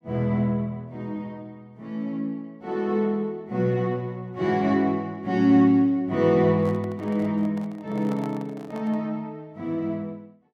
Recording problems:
microphone handling noise; from 6.5 to 9 s; peak -11 dB vs average level

